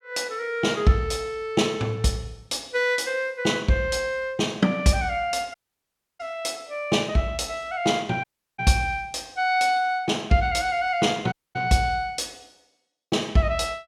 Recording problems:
dropout; at 5.5 s for 0.5 s, at 8 s and at 11 s

